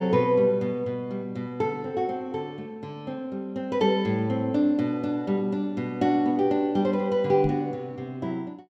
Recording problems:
knock on the microphone; at 7.5 s; peak 0 dB vs average level

